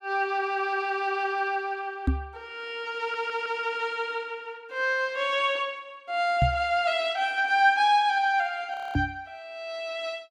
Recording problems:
microphone bump; at 2 s, at 6.5 s and at 9 s; peak +5 dB vs average level
audio stuttering; at 3 s
audio freezing; at 8.5 s

